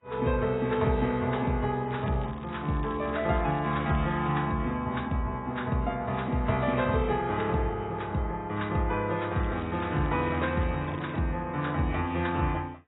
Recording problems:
lossy compression; AAC, log-spectral distance 3 dB, nothing above 3.8 kHz
crackling; from 2 to 4.5 s and from 9.5 to 11 s; loose cable, SNR 24 dB

